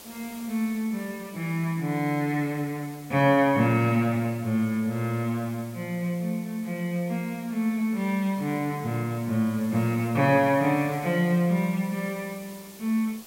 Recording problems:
background hiss; SNR 21 dB

